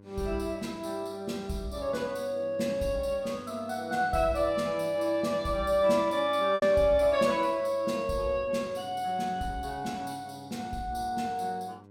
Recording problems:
hum; 50 Hz, harmonics up to 1.1 kHz, SNR 24 dB
packet loss; 0.7% of the sound replaced, filled with repeated pitch periods

